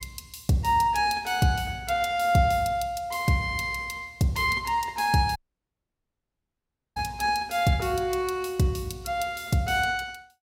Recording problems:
dropout; at 5.5 s for 1.5 s

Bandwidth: 16.5 kHz